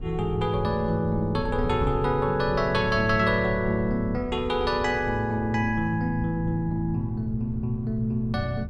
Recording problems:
wind noise; below 140 Hz, SNR 11 dB

